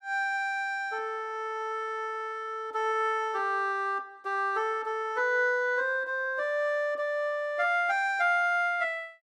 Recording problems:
none

